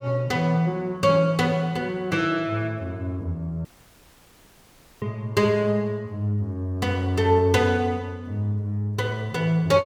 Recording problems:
audio cutting out; at 3.5 s for 1.5 s

